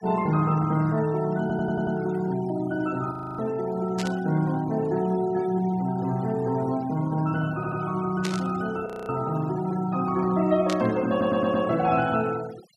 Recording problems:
noise reduction artefacts; signal-to-artefact ratio 20 dB
audio stuttering; at 1.5 s, at 7.5 s and at 11 s
frozen audio; at 3 s and at 9 s
static burst; at 4 s, at 8 s and at 11 s; peak -3 dB vs average level

